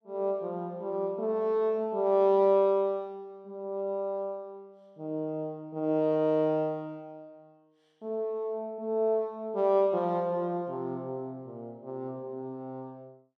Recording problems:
none

